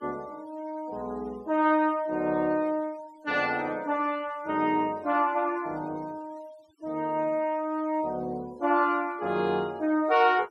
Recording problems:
denoising artefacts; signal-to-artefact ratio 27 dB

